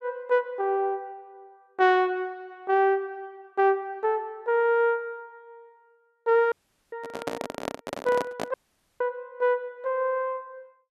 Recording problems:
dropout; at 6.5 s and at 8.5 s
microphone handling noise; from 7 to 8.5 s; peak -1 dB vs average level

